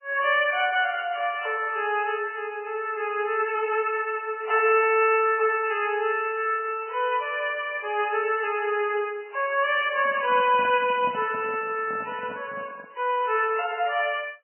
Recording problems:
lossy compression; MP3, log-spectral distance 4 dB, nothing above 2.7 kHz
microphone handling noise; from 10 to 13 s; peak -11 dB vs average level

